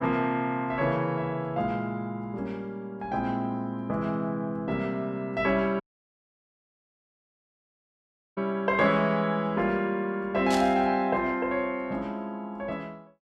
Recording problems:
audio cutting out; at 6 s for 2.5 s
static burst; at 11 s; peak -1 dB vs average level

